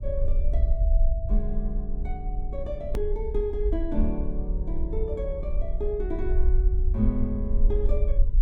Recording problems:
rumble; below 52 Hz, SNR -4 dB
hard cut with a click; at 3 s

